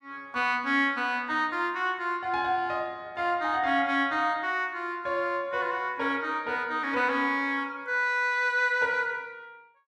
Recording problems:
none

